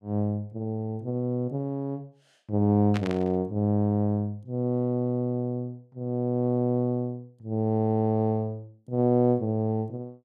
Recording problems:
burst of static; at 3 s; peak -4 dB vs average level

